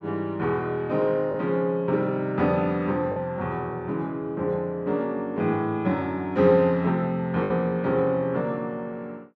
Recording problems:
lost packets; 1.3% of the sound replaced, filled with the last packet

